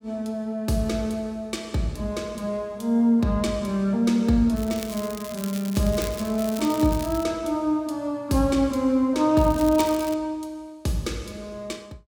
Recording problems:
crackling; from 4.5 to 7 s and at 9.5 s; loose cable, SNR 14 dB

